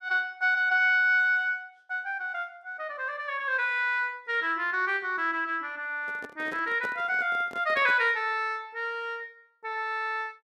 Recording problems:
microphone handling noise; from 6 to 8 s; peak -8 dB vs average level

